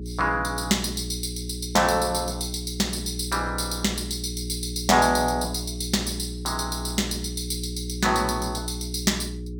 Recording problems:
hum; 60 Hz, harmonics up to 420 Hz, SNR 8 dB

